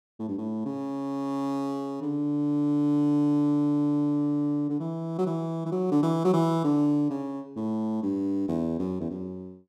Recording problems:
none

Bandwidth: 14 kHz